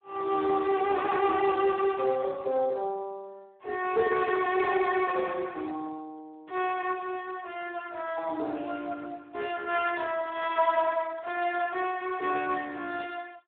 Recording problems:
telephone audio; 320 Hz to 3.4 kHz, Speex

